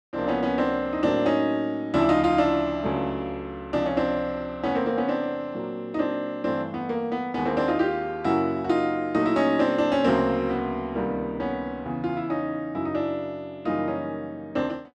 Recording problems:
none

